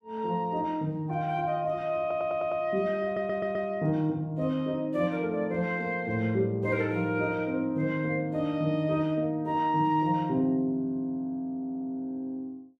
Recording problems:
audio stuttering; at 2 s, at 3 s and at 12 s

